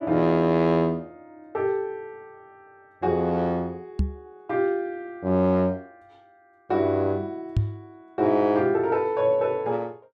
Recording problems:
microphone bump; at 4 s and at 7.5 s; peak +4 dB vs average level

